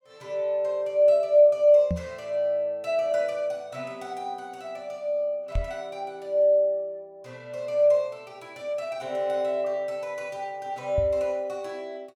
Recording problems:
microphone bump; at 2 s, at 5.5 s and at 11 s; peak 0 dB vs average level

